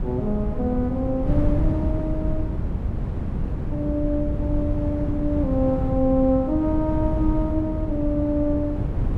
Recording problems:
wind noise; below 160 Hz, SNR 2 dB

